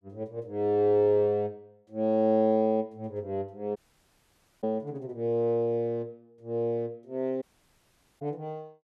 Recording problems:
dropout; at 4 s for 1 s and at 7.5 s for 1 s

